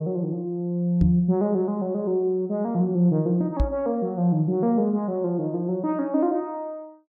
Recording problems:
microphone thump; at 1 s and at 3.5 s; peak +4 dB vs average level

